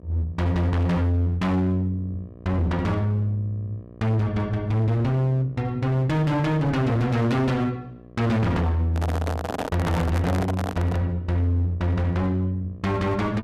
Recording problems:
distorted audio; hard clipping, uneven, signal-to-distortion ratio 7 dB
electrical hum; 60 Hz, harmonics up to 1.3 kHz, SNR 21 dB
microphone handling noise; from 9 to 11 s; peak -1 dB vs average level

